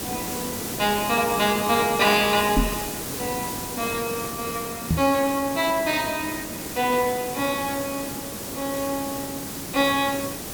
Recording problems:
background hiss; SNR 6 dB
knock on the microphone; at 2.5 s and at 5 s; peak +5 dB vs average level

